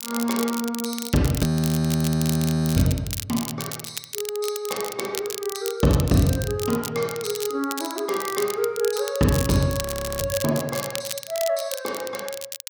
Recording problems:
crackling; vinyl, SNR 8 dB
audio freezing; at 1.5 s for 1.5 s and at 10 s

